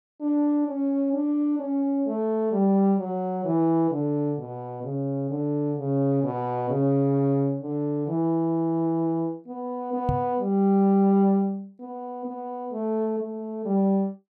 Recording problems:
microphone thump; at 10 s; peak +2 dB vs average level

